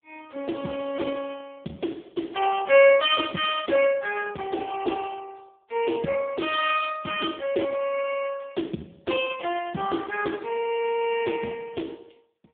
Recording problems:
telephone audio; 170 Hz to 3.5 kHz, AMR-NB

